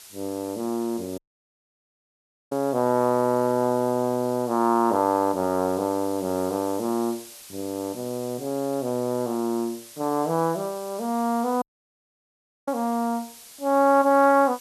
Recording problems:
hiss; slope +2 dB per octave, SNR 18 dB
audio cutting out; at 1 s for 1.5 s and at 12 s for 1 s

